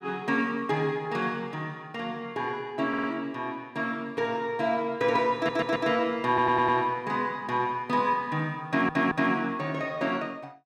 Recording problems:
audio stuttering; 4 times, first at 3 s

